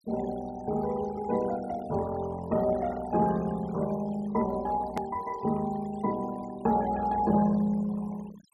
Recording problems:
denoising artefacts; signal-to-artefact ratio 18 dB
click at an edit; at 5 s

